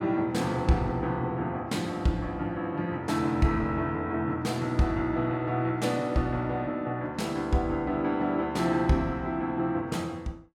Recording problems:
none

